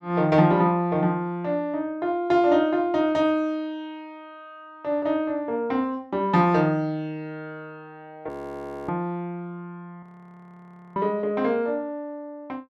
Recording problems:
frozen audio; at 8.5 s for 0.5 s and at 10 s for 1 s

